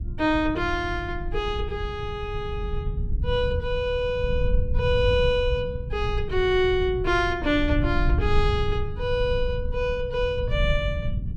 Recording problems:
rumble; below 90 Hz, SNR 4 dB

